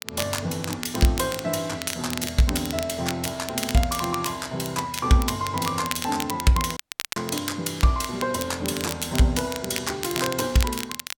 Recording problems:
crackling; vinyl, SNR 8 dB
dropout; at 7 s

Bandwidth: 18 kHz